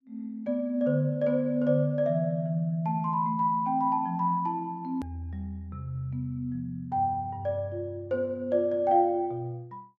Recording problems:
treble missing; nothing above 8 kHz
edit click; at 5 s

